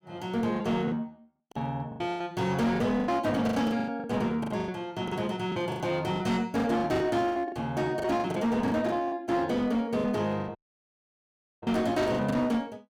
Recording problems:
distorted audio; hard clipping, uneven, signal-to-distortion ratio 11 dB
packet loss; 16% of the sound replaced, filled with the last packet
audio cutting out; at 11 s for 1 s

